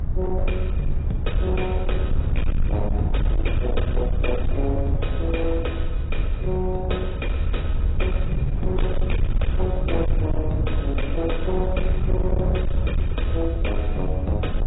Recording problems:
codec artefacts; AAC, log-spectral distance 2 dB, nothing above 3.8 kHz
distorted audio; hard clipping, signal-to-distortion ratio 10 dB
rumble; below 76 Hz, SNR -3 dB

